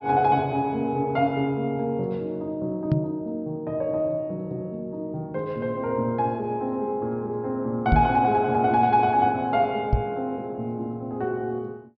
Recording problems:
treble missing; nothing above 5.5 kHz
knock on the microphone; at 3 s, at 8 s and at 10 s; peak +7 dB vs average level

